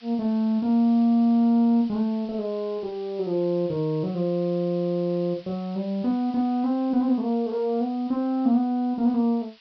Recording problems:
treble cut off; nothing above 5.5 kHz
hiss; SNR 27 dB

